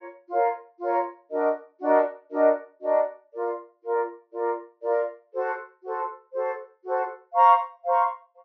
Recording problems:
treble cut off; nothing above 6.2 kHz

